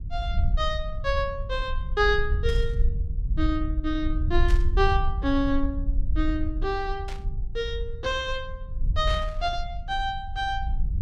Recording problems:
rumble; below 64 Hz, SNR 1 dB
static burst; 4 times, first at 2.5 s; peak -7 dB vs average level

